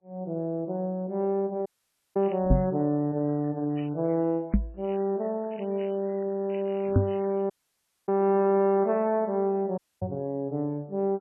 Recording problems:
lossy compression; MP3, log-spectral distance 4 dB
audio cutting out; at 1.5 s, at 7.5 s for 0.5 s and at 10 s
crackle; from 2 to 4 s and from 5 to 7.5 s; loose cable, SNR 24 dB
microphone bump; 4 times, first at 2.5 s; peak +9 dB vs average level

